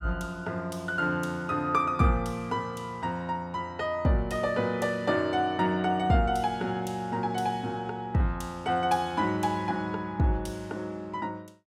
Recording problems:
none

